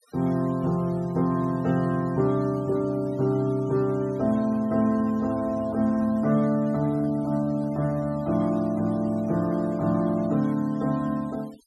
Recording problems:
noise reduction artefacts; signal-to-artefact ratio 26 dB

